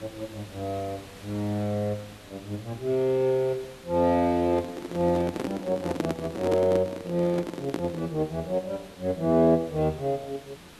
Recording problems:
background hiss; slope -3 dB per octave, SNR 20 dB
microphone handling noise; from 4.5 to 8 s; peak +3 dB vs average level

